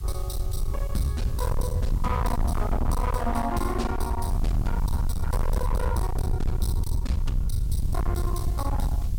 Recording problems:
distorted audio; hard clipping, uneven, signal-to-distortion ratio 5 dB
hiss; slope +1 dB per octave, SNR 20 dB
rumble; below 90 Hz, SNR -4 dB

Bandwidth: 16.5 kHz